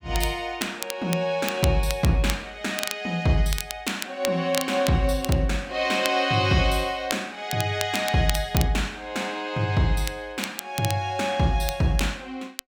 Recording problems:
crackle; vinyl, SNR 10 dB

